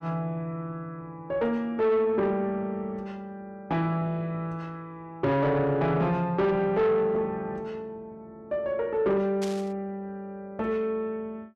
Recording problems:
distortion; soft clipping, signal-to-distortion ratio 11 dB
static burst; at 9.5 s; peak -6 dB vs average level

